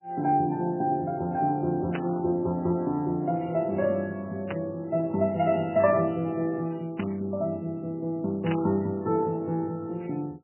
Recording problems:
lossy codec; MP3, log-spectral distance 2 dB, nothing above 2.7 kHz
burst of static; 4 times, first at 2 s; peak -2 dB vs average level

